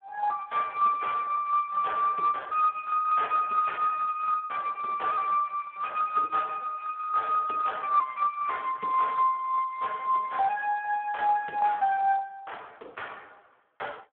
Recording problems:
phone line; 300 Hz to 3.4 kHz, Speex

